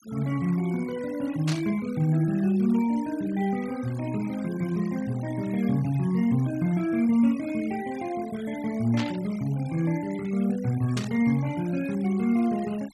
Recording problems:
denoising artefacts; signal-to-artefact ratio 21 dB
burst of static; at 1.5 s, at 9 s and at 11 s; peak -3 dB vs average level

